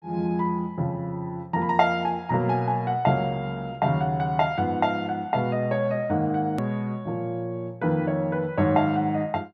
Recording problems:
hard cut with a click; at 6.5 s

